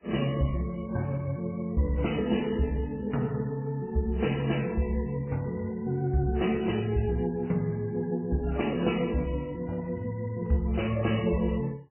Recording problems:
lossy compression; MP3, then MP3, log-spectral distance 4 dB, nothing above 2.9 kHz

